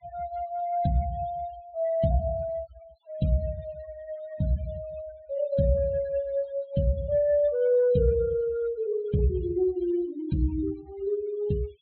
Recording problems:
low-pass filter; nothing above 4.2 kHz
denoising artefacts; signal-to-artefact ratio 21 dB

